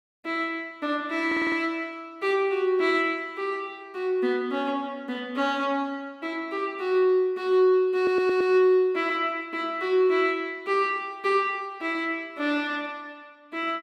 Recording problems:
audio stuttering; at 1.5 s and at 8 s

